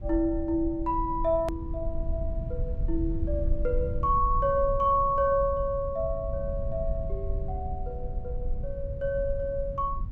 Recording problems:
low-frequency rumble; below 70 Hz, SNR 6 dB
click at an edit; at 1.5 s

